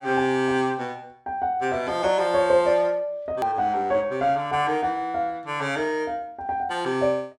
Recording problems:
click at an edit; at 3.5 s

